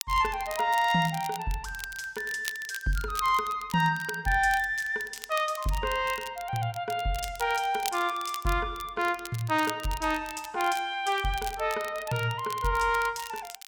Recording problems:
crackling; vinyl, SNR 14 dB

